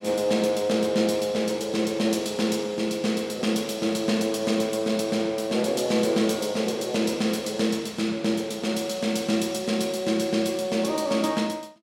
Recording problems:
none

